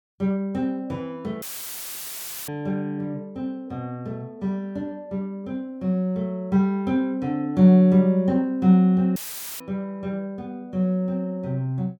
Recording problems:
dropout; at 1.5 s for 1 s and at 9 s; filled with static

